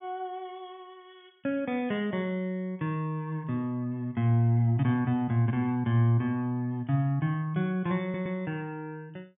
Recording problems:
treble missing; nothing above 3.6 kHz
audio stuttering; at 8 s

